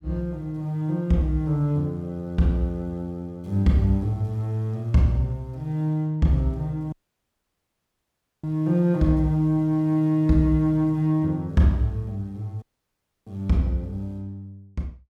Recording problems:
audio cutting out; at 7 s for 1.5 s and at 13 s for 0.5 s

